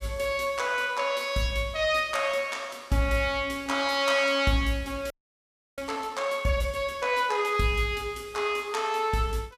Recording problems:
frozen audio; at 5 s for 0.5 s

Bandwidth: 14.5 kHz